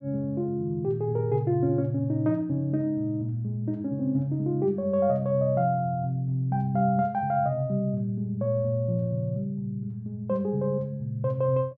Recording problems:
none

